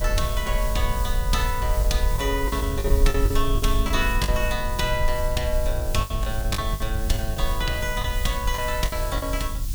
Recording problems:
hiss; slope +3 dB per octave, SNR 10 dB
low-frequency rumble; below 60 Hz, SNR 1 dB
lost packets; 8% of the sound replaced, filled with the last packet

